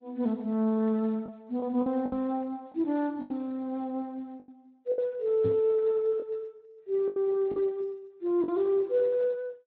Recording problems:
codec artefacts; AAC, then Speex, log-spectral distance 2 dB, nothing above 15.5 kHz
packet loss; 6% of the sound replaced, filled with the last packet
microphone bump; at 2 s, at 5.5 s and at 7.5 s; peak 0 dB vs average level

